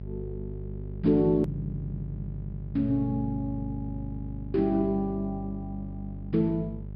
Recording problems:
treble missing; nothing above 5.5 kHz
hum; 50 Hz, harmonics up to 450 Hz, SNR 9 dB
click at an edit; at 1.5 s

